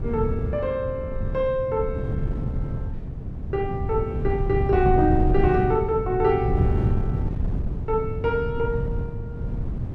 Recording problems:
wind noise; below 140 Hz, SNR 3 dB

